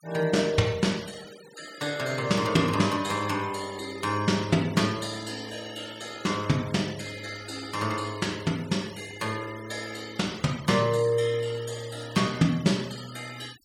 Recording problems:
noise reduction artefacts; signal-to-artefact ratio 18 dB

